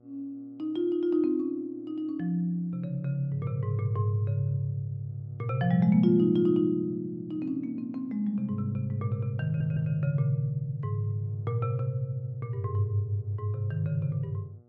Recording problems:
hum; 60 Hz, harmonics up to 840 Hz, SNR 29 dB
stutter; at 9.5 s

